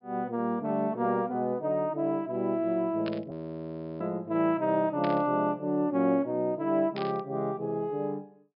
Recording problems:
treble missing; nothing above 5.5 kHz
static burst; at 3 s, at 5 s and at 7 s; peak -6 dB vs average level
audio freezing; at 3.5 s for 0.5 s

